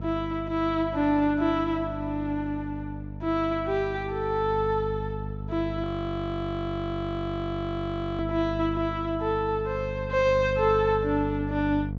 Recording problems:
treble cut off; nothing above 8 kHz
electrical hum; 50 Hz, harmonics up to 500 Hz, SNR 8 dB
audio freezing; at 6 s for 2.5 s

